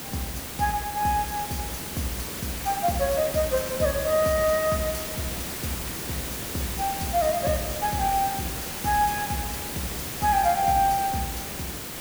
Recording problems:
hiss; slope -3 dB per octave, SNR 5 dB

